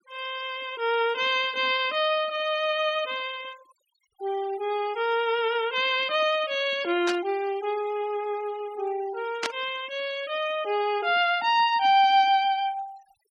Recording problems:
denoising artefacts; signal-to-artefact ratio 19 dB
static burst; at 7 s and at 9.5 s; peak 0 dB vs average level

